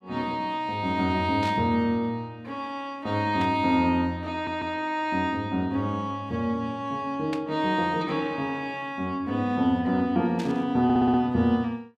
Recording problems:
burst of static; 4 times, first at 1.5 s; peak -7 dB vs average level
stutter; at 4.5 s and at 11 s

